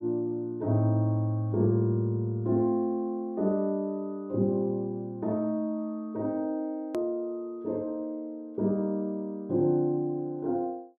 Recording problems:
hard cut with a click; at 7 s

